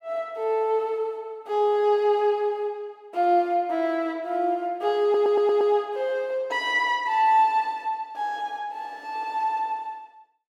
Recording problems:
audio stuttering; at 5 s

